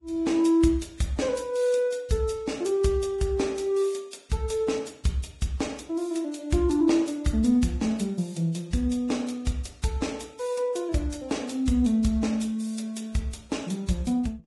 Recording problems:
lossy codec; Vorbis, log-spectral distance 3 dB, nothing above 11.3 kHz

